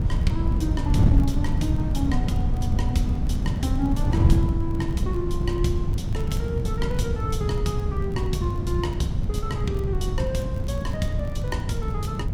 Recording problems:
wind on the microphone; below 130 Hz, SNR -5 dB
crackle; vinyl, SNR 26 dB

